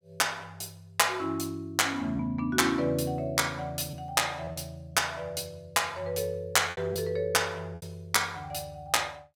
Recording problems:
packet loss; 3% of the sound replaced, filled with repeated pitch periods

